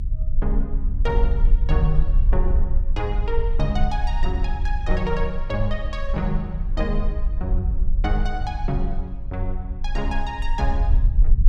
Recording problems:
low-frequency rumble; below 50 Hz, SNR -4 dB

